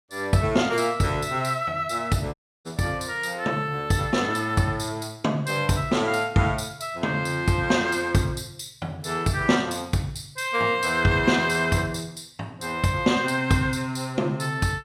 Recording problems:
audio cutting out; at 2.5 s

